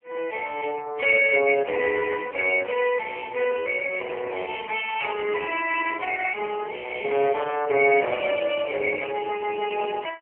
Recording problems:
telephone audio; 340 Hz to 2.8 kHz, AMR-NB

